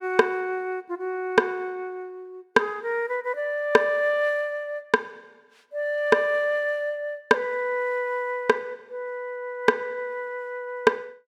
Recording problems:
none

